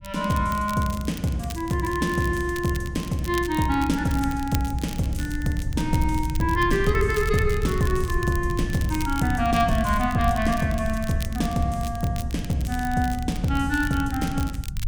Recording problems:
low-frequency rumble; below 96 Hz, SNR 8 dB
crackle; vinyl, SNR 16 dB

